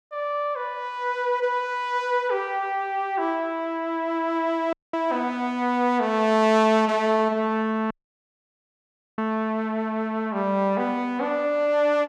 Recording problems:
audio cutting out; at 4.5 s and at 8 s for 1.5 s

